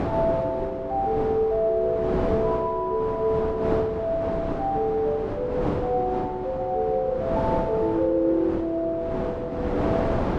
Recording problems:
wind noise; below 690 Hz, SNR 5 dB

